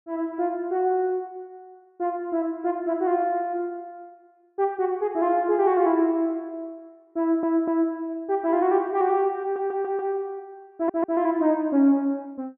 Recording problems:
stutter; at 7 s, at 9.5 s and at 11 s

